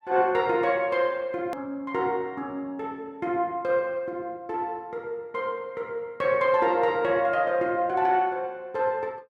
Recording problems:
hard cut with a click; at 1.5 s

